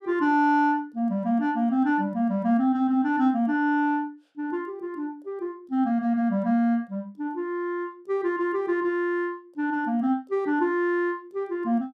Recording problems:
none

